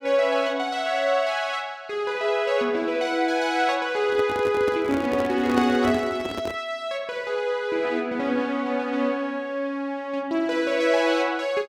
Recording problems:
microphone handling noise; from 4 to 6.5 s; peak 0 dB vs average level

